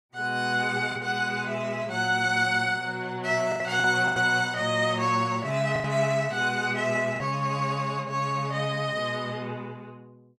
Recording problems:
packet loss; 4% of the sound replaced, filled with the last packet

